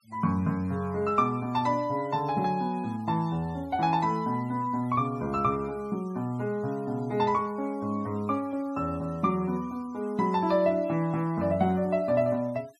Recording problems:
noise reduction artefacts; signal-to-artefact ratio 27 dB

